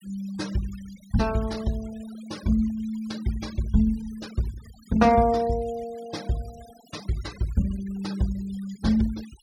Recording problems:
noise reduction artefacts; signal-to-artefact ratio 19 dB

